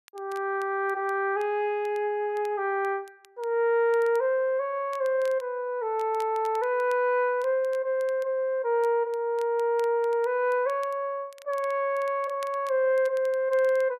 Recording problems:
crackling; vinyl, SNR 28 dB

